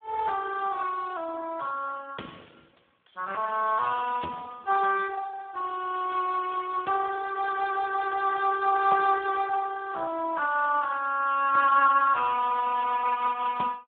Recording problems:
phone line; 280 Hz to 3.1 kHz, Speex

